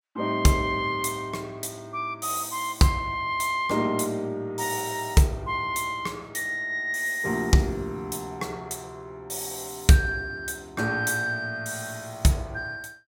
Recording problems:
none

